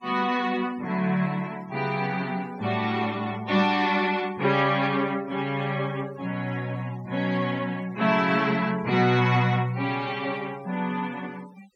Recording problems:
noise reduction artefacts; signal-to-artefact ratio 23 dB

